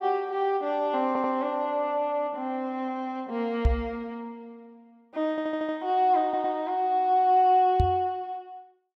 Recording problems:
stutter; at 1 s, at 5.5 s and at 6 s
microphone thump; at 3.5 s and at 8 s; peak +6 dB vs average level

